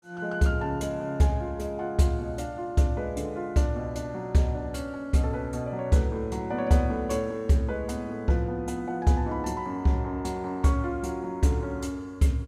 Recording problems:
none

